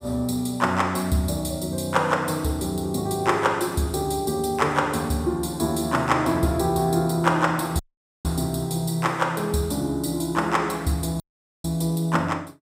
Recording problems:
audio cutting out; at 8 s and at 11 s

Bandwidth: 15.5 kHz